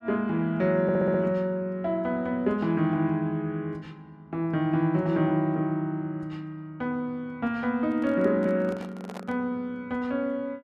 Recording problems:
audio stuttering; at 1 s
handling noise; from 8 to 9.5 s; peak -9 dB vs average level

